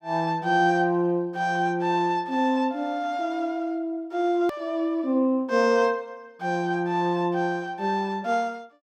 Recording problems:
click at an edit; at 4.5 s

